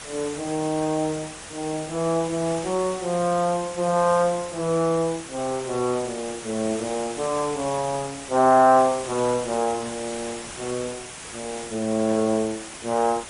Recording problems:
lossy compression; MP3, log-spectral distance 12 dB
hiss; slope -2 dB per octave, SNR 12 dB

